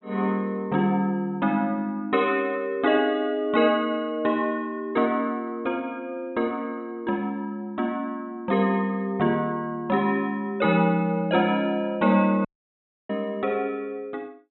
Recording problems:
low-pass filter; nothing above 3.9 kHz
dropout; at 12 s for 0.5 s

